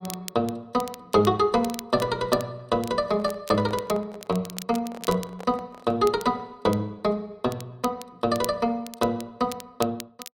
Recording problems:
crackling; vinyl, SNR 16 dB
handling noise; from 3 to 6 s; peak -10 dB vs average level

